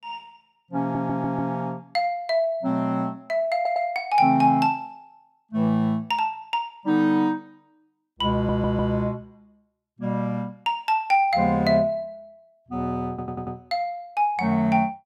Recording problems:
stutter; 4 times, first at 1 s

